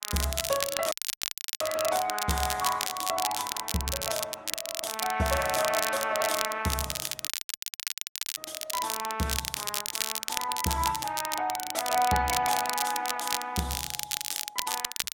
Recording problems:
lossy compression; Opus, log-spectral distance 4 dB, nothing above 16.5 kHz
crackle; vinyl, SNR 2 dB
audio cutting out; at 1 s for 0.5 s and at 7.5 s for 1 s

